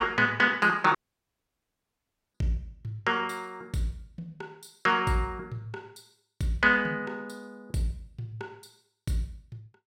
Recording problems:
dropout; at 1 s for 1.5 s

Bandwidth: 16 kHz